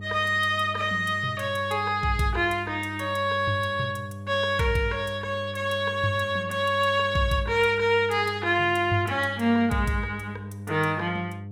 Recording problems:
hum; 50 Hz, harmonics up to 500 Hz, SNR 13 dB

